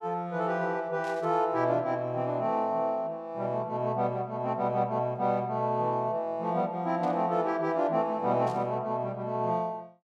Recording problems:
static burst; at 1 s, at 7 s and at 8.5 s; peak -15 dB vs average level

